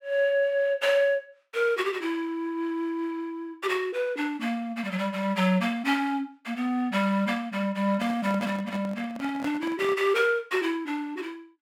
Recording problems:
handling noise; from 8 to 10 s; peak -5 dB vs average level

